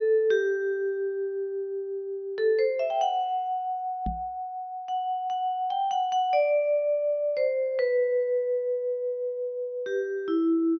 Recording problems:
treble missing; nothing above 6.1 kHz
microphone bump; at 4 s; peak -2 dB vs average level

